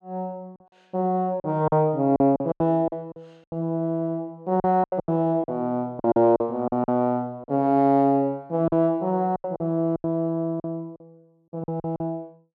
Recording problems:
lost packets; 12% of the sound replaced, filled with silence

